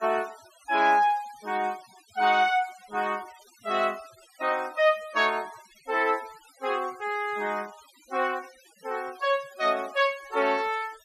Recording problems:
denoising artefacts; signal-to-artefact ratio 22 dB

